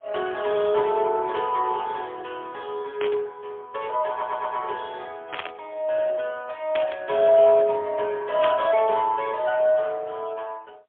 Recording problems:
telephone audio; 280 Hz to 3.4 kHz, AMR-NB, then MP3
static burst; 4 times, first at 3 s; peak -1 dB vs average level
stutter; at 4 s

